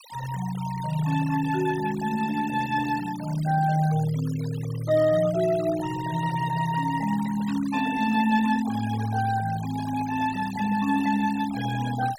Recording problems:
noise reduction artefacts; signal-to-artefact ratio 15 dB
burst of static; at 7.5 s; peak -16 dB vs average level

